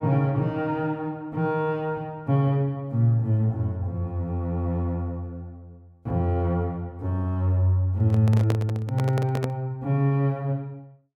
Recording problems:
handling noise; from 8 to 9.5 s; peak 0 dB vs average level

